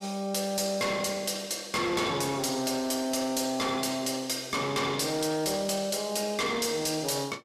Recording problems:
distortion; hard clipping, signal-to-distortion ratio 10 dB

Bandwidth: 14 kHz